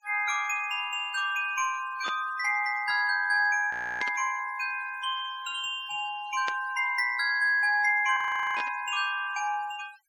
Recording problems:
noise reduction artefacts; signal-to-artefact ratio 21 dB
burst of static; 4 times, first at 2 s; peak -5 dB vs average level
frozen audio; at 3.5 s and at 8 s

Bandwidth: 17.5 kHz